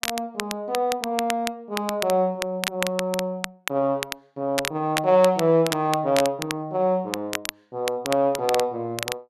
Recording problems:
crackle; vinyl, SNR 8 dB

